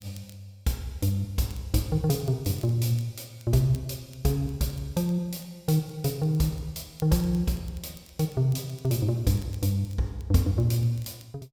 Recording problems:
crackle; vinyl, SNR 28 dB

